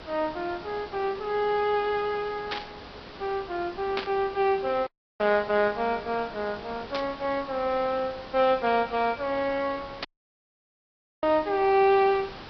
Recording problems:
treble missing; nothing above 5.5 kHz
codec artefacts; Vorbis, log-spectral distance 6 dB
background hiss; slope -4 dB per octave, SNR 16 dB
burst of static; 4 times, first at 2.5 s; peak 0 dB vs average level
dropout; at 5 s and at 10 s for 1 s

